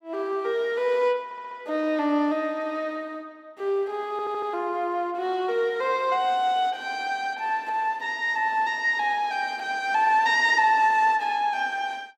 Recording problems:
stutter; at 1.5 s and at 4 s

